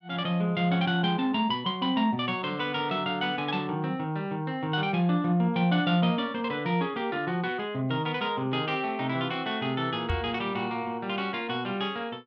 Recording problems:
microphone bump; at 10 s; peak +1 dB vs average level

